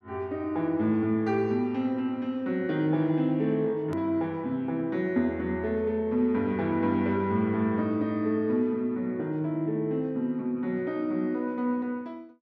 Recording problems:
edit click; at 4 s

